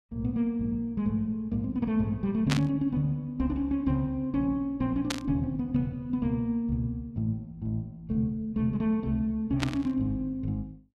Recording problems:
burst of static; at 2.5 s, at 5 s and at 9.5 s; peak +4 dB vs average level

